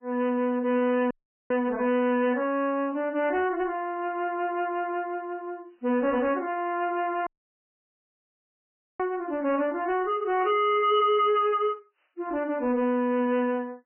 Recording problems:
codec artefacts; MP3, log-spectral distance 2 dB, nothing above 2.4 kHz
distortion; soft clipping, signal-to-distortion ratio 11 dB
audio cutting out; at 1 s and at 7.5 s for 1.5 s

